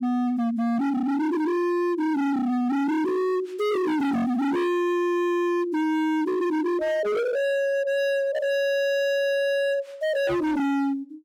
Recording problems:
distorted audio; hard clipping, signal-to-distortion ratio 6 dB

